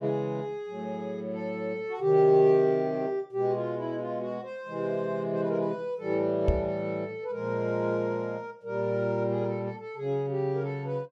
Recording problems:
knock on the microphone; at 6.5 s; peak +6 dB vs average level

